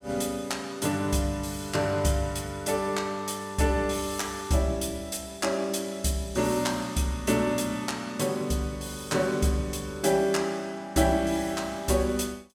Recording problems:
none

